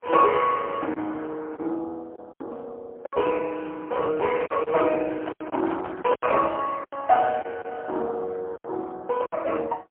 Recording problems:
telephone audio; 280 Hz to 2.5 kHz, AMR-NB, then MP3
lost packets; 7% of the sound replaced, filled with silence
handling noise; from 4 to 6.5 s; peak -5 dB vs average level

